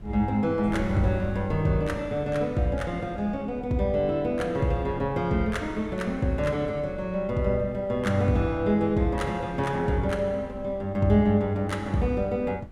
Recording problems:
wind on the microphone; below 130 Hz, SNR 18 dB

